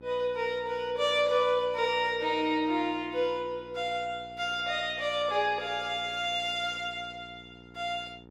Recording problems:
electrical hum; 60 Hz, harmonics up to 1.4 kHz, SNR 22 dB

